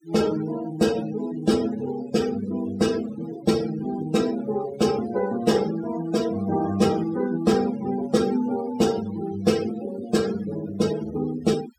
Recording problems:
denoising artefacts; signal-to-artefact ratio 15 dB

